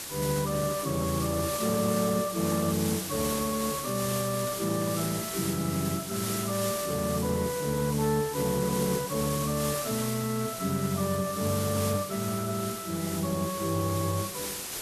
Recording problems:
codec artefacts; Speex, log-spectral distance 3 dB
background hiss; slope -1 dB per octave, SNR 5 dB

